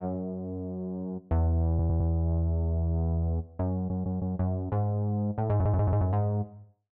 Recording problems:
stutter; at 1.5 s, at 3.5 s and at 5.5 s

